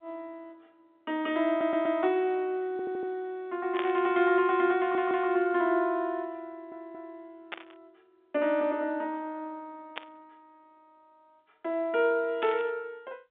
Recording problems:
telephone audio; 260 Hz to 3.8 kHz, G.711
stutter; 4 times, first at 1.5 s
burst of static; 4 times, first at 3.5 s; peak -4 dB vs average level

